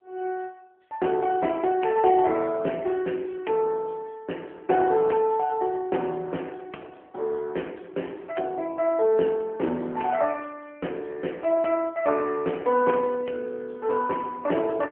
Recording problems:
phone line; 240 Hz to 3 kHz, AMR-NB

